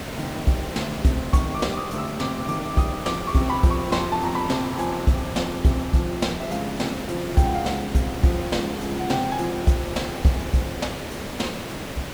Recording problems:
hiss; slope -5 dB per octave, SNR 9 dB
wind on the microphone; below 560 Hz, SNR 22 dB

